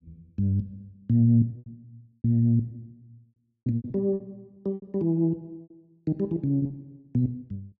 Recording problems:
packet loss; 11% of the sound replaced, filled with repeated pitch periods

